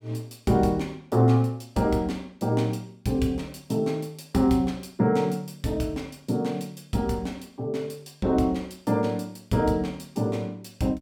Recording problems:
none

